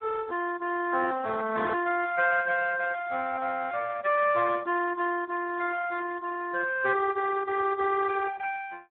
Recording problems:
phone line; 260 Hz to 2.8 kHz, Speex

